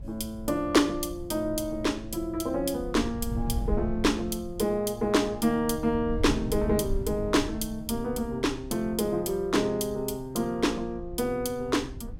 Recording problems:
wind on the microphone; below 96 Hz, SNR 11 dB

